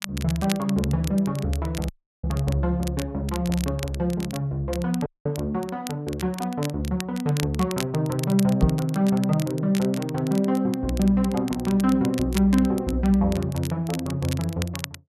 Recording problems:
crackling; vinyl, SNR 15 dB
audio cutting out; at 2 s and at 5 s
knock on the microphone; at 8.5 s; peak +8 dB vs average level

